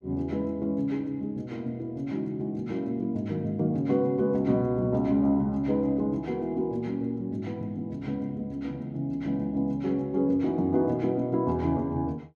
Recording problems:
none

